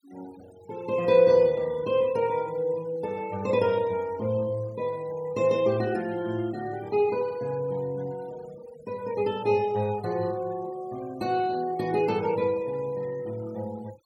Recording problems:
denoising artefacts; signal-to-artefact ratio 23 dB

